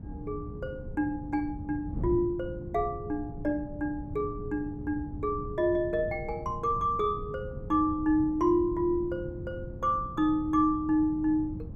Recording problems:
wind noise; below 170 Hz, SNR 11 dB

